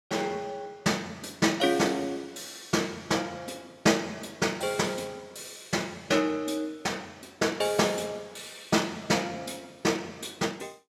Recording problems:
none

